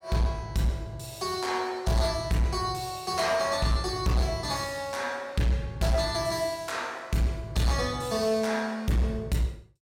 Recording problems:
distortion; hard clipping, signal-to-distortion ratio 11 dB

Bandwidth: 16.5 kHz